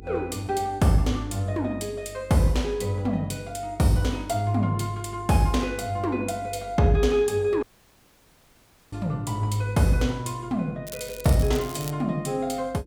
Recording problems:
electrical hum; 50 Hz, harmonics up to 450 Hz, SNR 22 dB
dropout; at 7.5 s for 1.5 s
crackle; from 11 to 12 s; loose cable, SNR 14 dB

